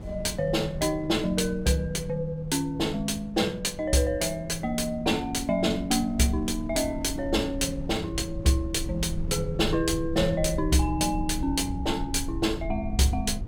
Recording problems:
low-frequency rumble; below 98 Hz, SNR 12 dB
wind on the microphone; below 160 Hz, SNR 15 dB

